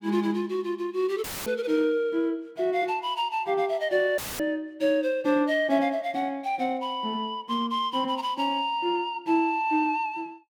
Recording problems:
audio cutting out; at 1 s and at 4 s; filled with static

